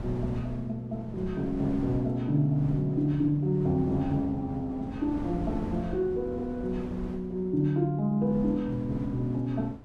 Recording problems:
wind on the microphone; below 270 Hz, SNR 12 dB

